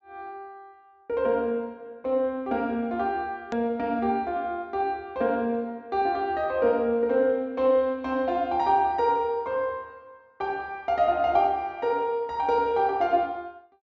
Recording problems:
low-pass filter; nothing above 7.5 kHz
hard cut with a click; at 3.5 s

